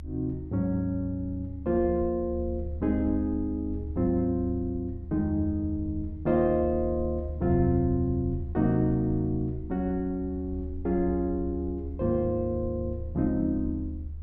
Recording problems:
low-frequency rumble; below 76 Hz, strongest tone 74 Hz, SNR 9 dB

